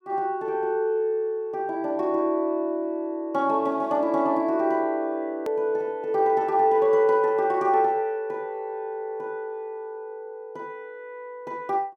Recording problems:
edit click; at 5.5 s

